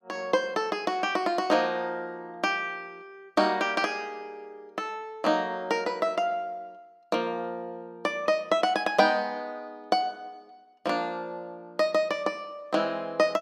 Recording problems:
none

